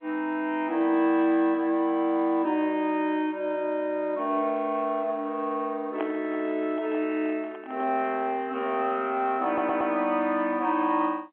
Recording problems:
phone line; 260 Hz to 3.4 kHz, G.711
microphone handling noise; from 6 to 8 s; peak -4 dB vs average level
audio stuttering; at 9.5 s

